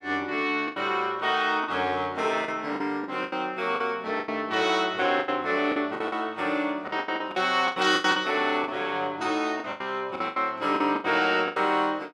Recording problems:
packet loss; 13% of the sound replaced, filled with the last packet

